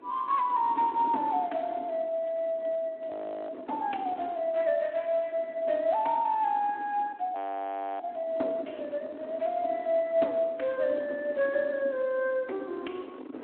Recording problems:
telephone audio; 240 Hz to 3.4 kHz, Speex
wind noise; below 520 Hz, SNR 16 dB
audio freezing; at 3 s and at 7.5 s for 0.5 s

